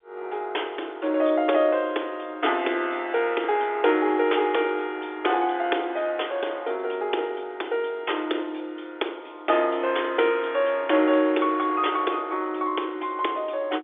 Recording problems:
telephone audio; 280 Hz to 3.6 kHz, G.711

